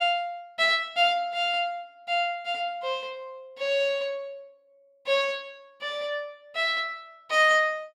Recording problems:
none

